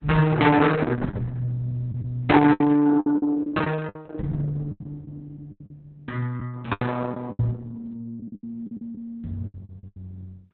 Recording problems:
lossy compression; Opus, log-spectral distance 2 dB, nothing above 4 kHz
packet loss; 13% of the sound replaced, filled with the last packet

